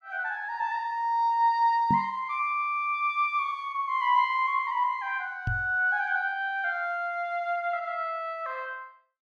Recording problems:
knock on the microphone; at 2 s and at 5.5 s; peak +1 dB vs average level

